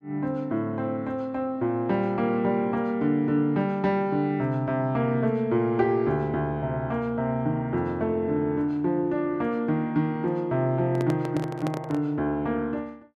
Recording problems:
microphone handling noise; from 11 to 12 s; peak -3 dB vs average level

